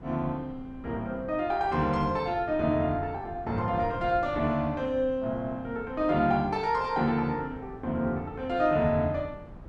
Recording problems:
wind on the microphone; below 300 Hz, SNR 17 dB

